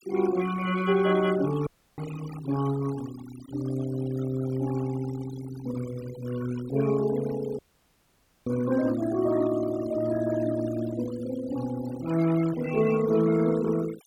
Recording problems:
noise reduction artefacts; signal-to-artefact ratio 15 dB
audio cutting out; at 1.5 s and at 7.5 s for 1 s

